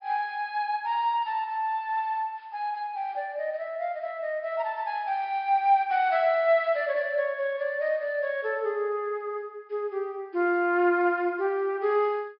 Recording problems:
treble missing; nothing above 5.5 kHz

